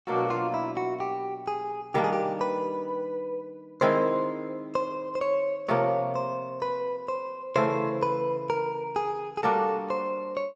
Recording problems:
none

